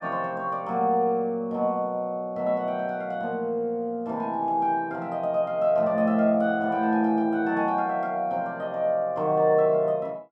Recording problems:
none

